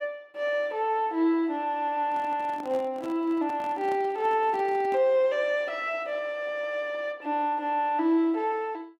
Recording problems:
handling noise; from 2 to 5 s; peak -10 dB vs average level

